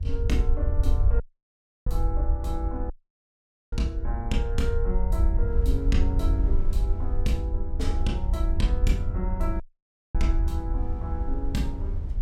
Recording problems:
low-frequency rumble; below 64 Hz, SNR -5 dB
wind on the microphone; below 270 Hz, SNR 14 dB
dropout; at 1 s for 0.5 s, at 3 s for 1 s and at 9.5 s for 0.5 s

